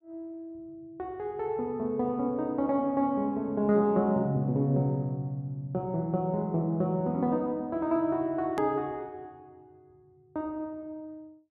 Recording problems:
edit click; at 8.5 s

